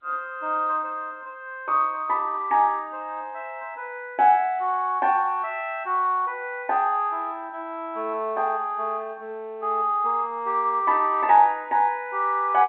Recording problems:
telephone audio; 240 Hz to 3.3 kHz, G.711

